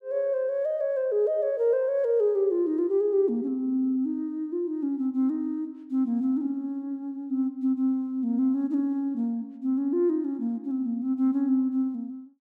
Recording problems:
none

